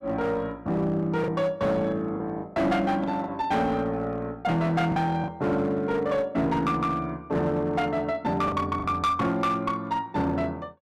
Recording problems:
distortion; hard clipping, uneven, signal-to-distortion ratio 11 dB
packet loss; 4% of the sound replaced, filled with the last packet

